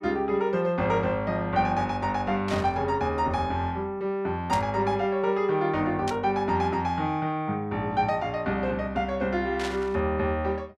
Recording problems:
static burst; 4 times, first at 2.5 s; peak -4 dB vs average level

